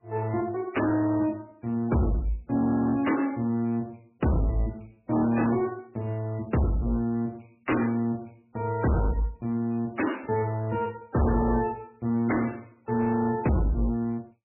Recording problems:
lossy codec; MP3, log-spectral distance 5 dB, nothing above 2.8 kHz
distorted audio; hard clipping, signal-to-distortion ratio 6 dB

